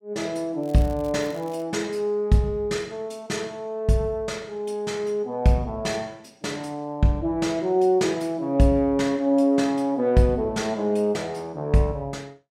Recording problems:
crackle; at 0.5 s; loose cable, SNR 26 dB

